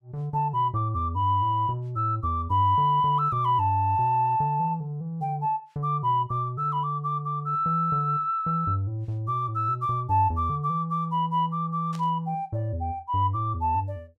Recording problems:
burst of static; at 12 s; peak -14 dB vs average level

